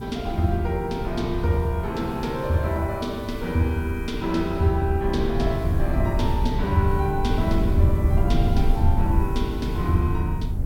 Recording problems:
hiss; slope +3 dB per octave, SNR 27 dB
low-frequency rumble; below 110 Hz, SNR 2 dB

